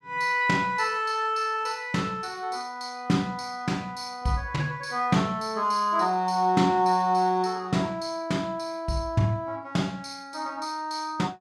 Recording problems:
none

